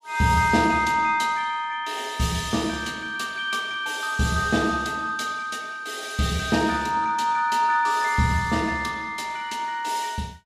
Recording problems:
none

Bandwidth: 15 kHz